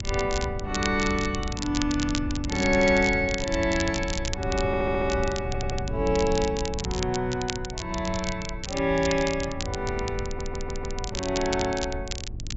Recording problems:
treble missing; nothing above 8 kHz
wind noise; below 110 Hz, SNR 8 dB
crackle; vinyl, SNR 9 dB
stutter; at 4.5 s, at 5.5 s and at 10 s

